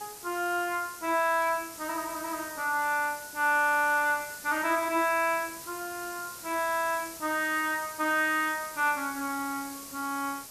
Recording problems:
hiss; SNR 12 dB

